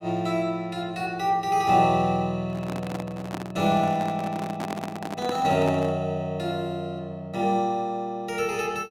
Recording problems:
handling noise; from 2.5 to 6 s; peak -2 dB vs average level

